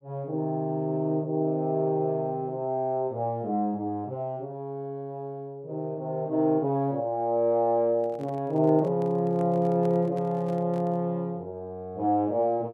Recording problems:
handling noise; from 8 to 11 s; peak -10 dB vs average level

